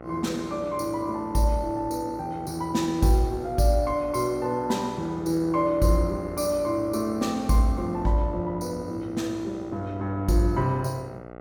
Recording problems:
electrical hum; 60 Hz, harmonics up to 2.2 kHz, SNR 16 dB

